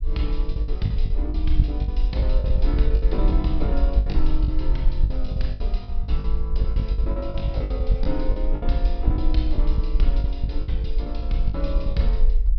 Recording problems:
treble cut off; nothing above 5.5 kHz
low-frequency rumble; below 52 Hz, SNR -5 dB
lost packets; 17% of the sound replaced, filled with the last packet

